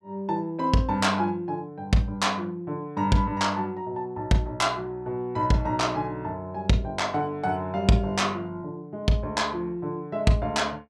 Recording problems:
none

